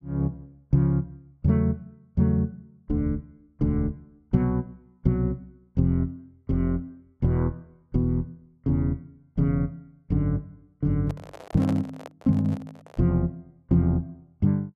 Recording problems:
microphone handling noise; from 11 to 13 s; peak -5 dB vs average level

